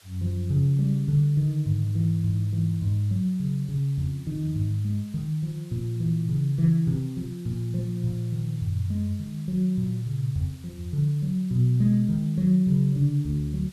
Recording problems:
hiss; slope +1 dB per octave, SNR 27 dB

